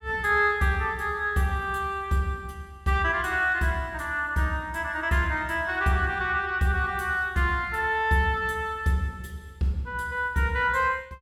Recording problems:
none

